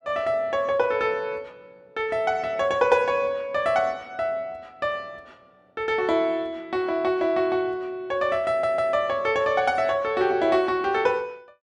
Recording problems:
audio stuttering; at 8.5 s

